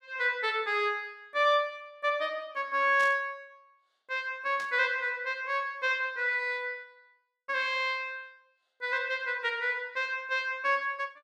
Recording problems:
burst of static; at 3 s and at 4.5 s; peak -10 dB vs average level

